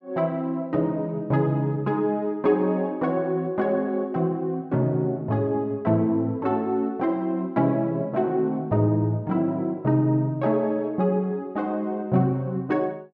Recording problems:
none

